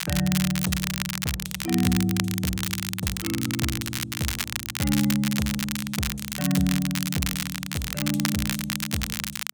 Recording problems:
crackle; vinyl, SNR 2 dB

